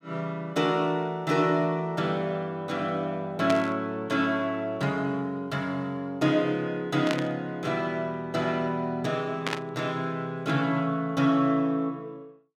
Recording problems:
static burst; at 3.5 s, at 7 s and at 9.5 s; peak +2 dB vs average level

